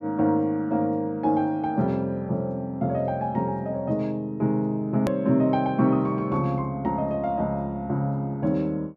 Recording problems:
edit click; at 5 s

